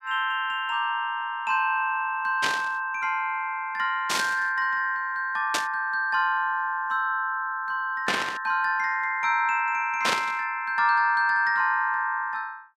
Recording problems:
static burst; 5 times, first at 2.5 s; peak +4 dB vs average level

